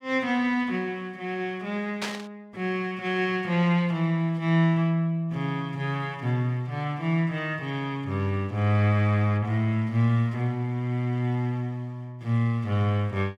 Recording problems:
static burst; at 2 s; peak -1 dB vs average level

